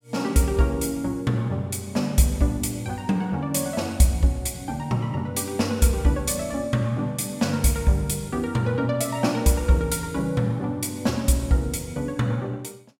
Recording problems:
none

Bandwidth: 16.5 kHz